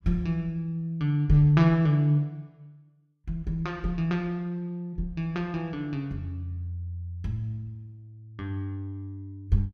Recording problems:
none

